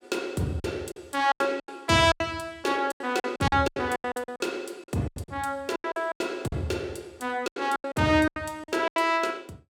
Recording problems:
packet loss; 17% of the sound replaced, filled with silence

